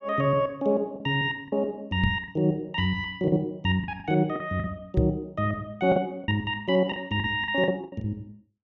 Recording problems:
lost packets; 8% of the sound replaced, filled with the last packet
knock on the microphone; at 2 s and at 5 s; peak +6 dB vs average level

